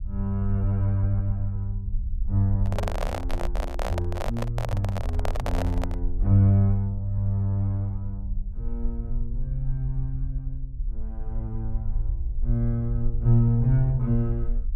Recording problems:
low-frequency rumble; below 50 Hz, SNR 7 dB
microphone handling noise; from 2.5 to 6 s; peak 0 dB vs average level

